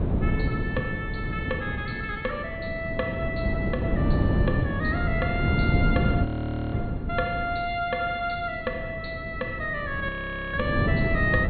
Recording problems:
treble missing; nothing above 4.2 kHz
wind noise; below 260 Hz, SNR -1 dB
audio freezing; at 6.5 s and at 10 s

